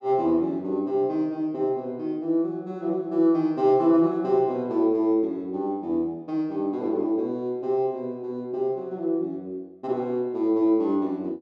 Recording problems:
none

